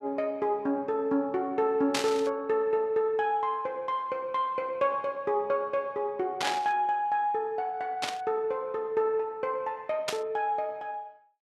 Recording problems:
burst of static; 4 times, first at 2 s; peak +4 dB vs average level

